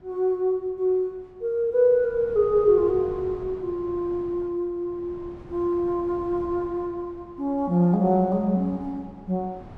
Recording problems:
wind on the microphone; below 400 Hz, SNR 20 dB

